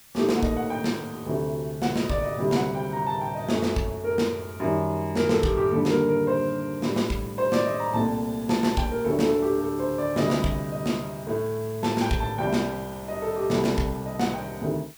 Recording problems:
background hiss; slope +1 dB per octave, SNR 21 dB

